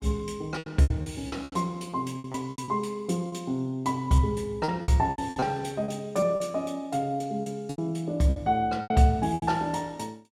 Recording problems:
lost packets; 13% of the sound replaced, filled with repeated pitch periods

